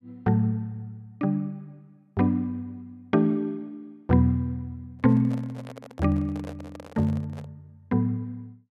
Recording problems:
microphone handling noise; from 5 to 7.5 s; peak -10 dB vs average level

